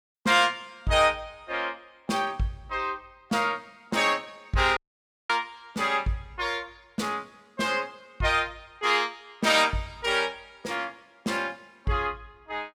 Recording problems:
audio cutting out; at 5 s for 0.5 s

